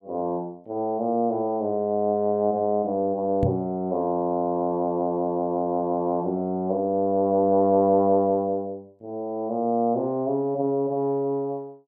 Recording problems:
microphone thump; at 3.5 s; peak +3 dB vs average level

